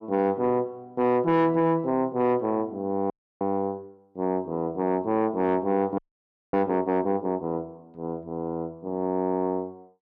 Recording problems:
distortion; soft clipping, signal-to-distortion ratio 11 dB
frozen audio; at 3 s and at 6 s for 0.5 s

